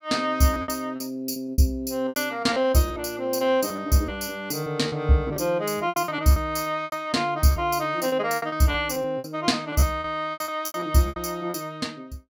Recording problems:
lost packets; 13% of the sound replaced, filled with repeated pitch periods

